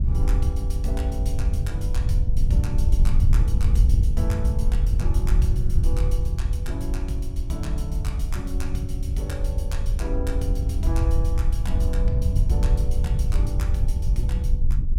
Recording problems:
wind noise; below 76 Hz, SNR -10 dB

